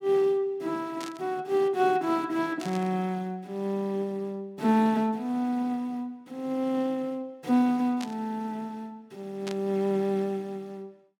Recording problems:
static burst; 4 times, first at 1 s; peak -6 dB vs average level

